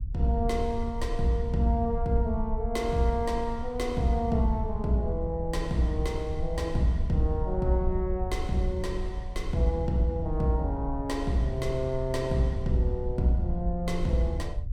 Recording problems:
low-frequency rumble; below 62 Hz, SNR 8 dB

